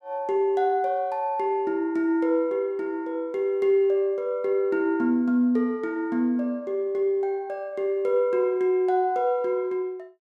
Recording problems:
none

